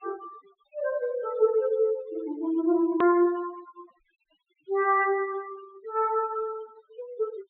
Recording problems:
treble missing; nothing above 4 kHz
denoising artefacts; signal-to-artefact ratio 22 dB
hard cut with a click; at 3 s

